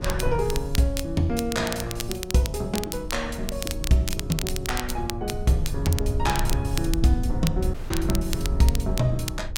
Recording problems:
low-frequency rumble; below 84 Hz, SNR 5 dB
crackling; vinyl, SNR 8 dB
dropout; at 7.5 s

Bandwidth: 16.5 kHz